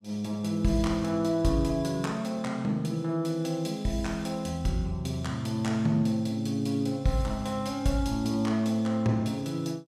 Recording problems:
none

